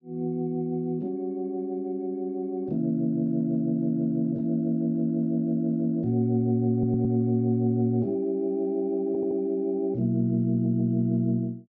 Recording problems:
audio stuttering; at 6.5 s, at 9 s and at 11 s

